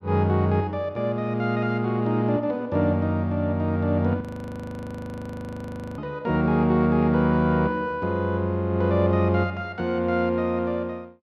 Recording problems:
audio freezing; at 4 s for 2 s

